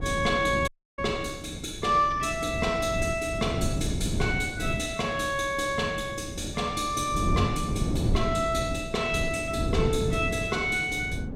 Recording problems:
wind on the microphone; below 240 Hz, SNR 5 dB
audio cutting out; at 0.5 s

